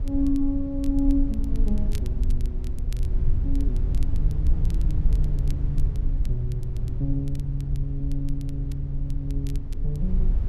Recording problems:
rumble; below 58 Hz, strongest tone 22 Hz, SNR -3 dB
crackling; vinyl, SNR 22 dB

